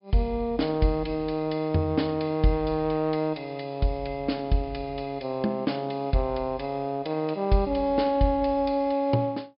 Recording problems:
treble cut off; nothing above 5.5 kHz

